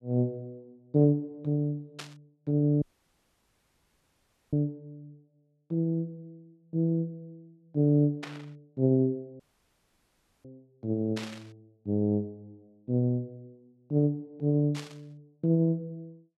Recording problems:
burst of static; 4 times, first at 2 s; peak -6 dB vs average level
audio cutting out; at 3 s for 1.5 s and at 9.5 s for 1 s

